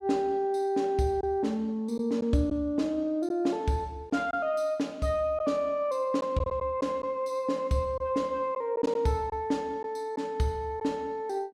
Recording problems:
packet loss; 3% of the sound replaced, filled with silence

